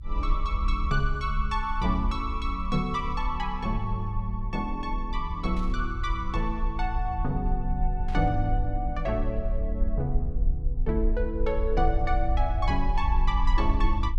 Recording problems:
rumble; below 50 Hz, strongest tone 32 Hz, SNR 1 dB
static burst; at 5.5 s and at 8 s; peak -13 dB vs average level

